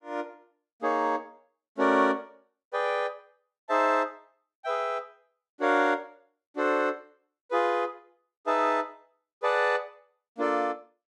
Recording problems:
none

